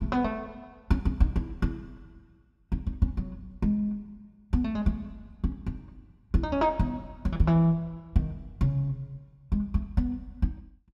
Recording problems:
none

